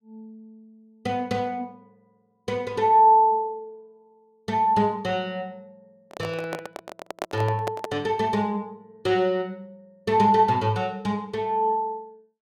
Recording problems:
handling noise; from 6 to 8 s; peak -3 dB vs average level

